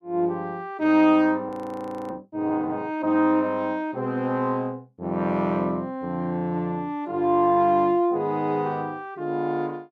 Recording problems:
frozen audio; at 1.5 s for 0.5 s

